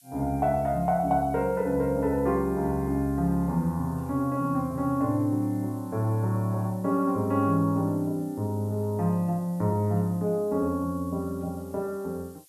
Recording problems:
background hiss; slope +6 dB per octave, SNR 27 dB

